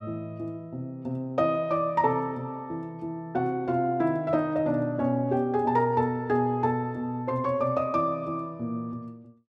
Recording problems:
none

